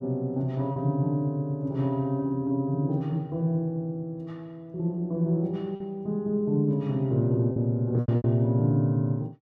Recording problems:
packet loss; 3% of the sound replaced, filled with repeated pitch periods

